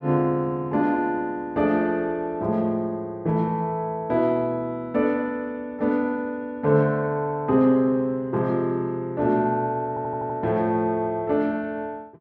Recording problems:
audio stuttering; at 10 s

